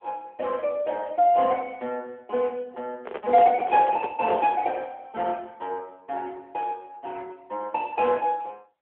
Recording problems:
telephone audio; 280 Hz to 3.3 kHz, AMR-NB
handling noise; from 3 to 4.5 s; peak -1 dB vs average level

